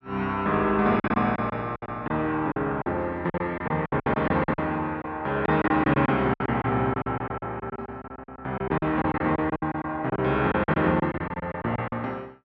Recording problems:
packet loss; 15% of the sound replaced, filled with silence

